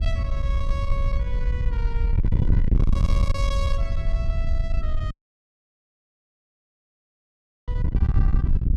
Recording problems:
distortion; soft clipping, signal-to-distortion ratio 11 dB
wind on the microphone; below 80 Hz, SNR -11 dB
audio cutting out; at 5 s for 2.5 s

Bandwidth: 15.5 kHz